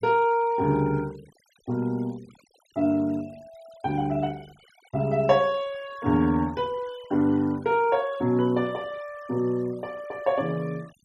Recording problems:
denoising artefacts; signal-to-artefact ratio 25 dB

